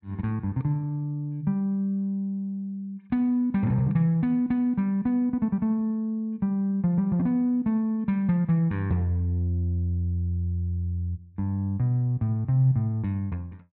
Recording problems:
none

